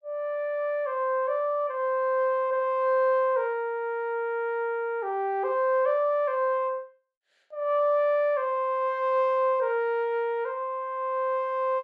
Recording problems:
none

